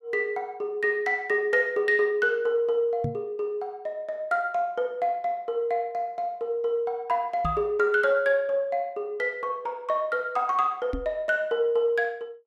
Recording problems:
knock on the microphone; at 3 s, at 7.5 s and at 11 s; peak 0 dB vs average level

